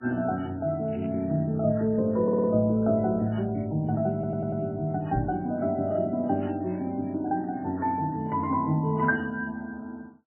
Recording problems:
codec artefacts; MP3, then MP3, log-spectral distance 3 dB, nothing above 2.9 kHz
crackle; from 1 to 4 s and from 6.5 to 8 s; loose cable, SNR 27 dB
audio stuttering; at 2 s and at 4 s
microphone bump; at 5 s; peak +2 dB vs average level

